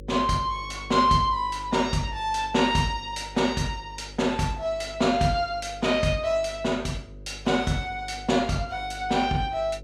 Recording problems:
hum; 50 Hz, harmonics up to 550 Hz, SNR 18 dB

